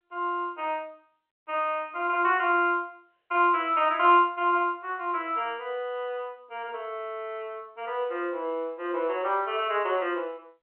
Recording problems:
phone line; 300 Hz to 3.1 kHz, G.711

